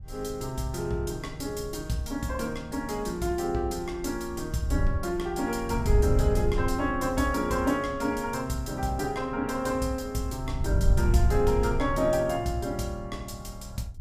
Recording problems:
wind noise; below 86 Hz, SNR 3 dB

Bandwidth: 15.5 kHz